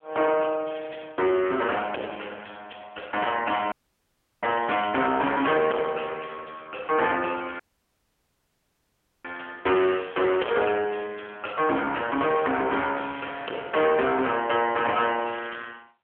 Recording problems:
telephone audio; 280 Hz to 3.3 kHz, AMR-NB
distorted audio; soft clipping, signal-to-distortion ratio 10 dB
dropout; at 3.5 s for 0.5 s and at 7.5 s for 1.5 s

